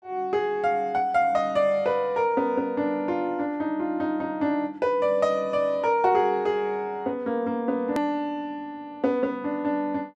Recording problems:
edit click; at 8 s

